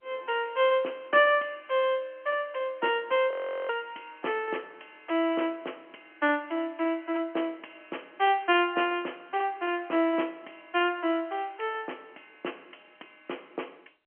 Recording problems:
phone line; 260 Hz to 3.2 kHz, G.711
audio freezing; at 3.5 s

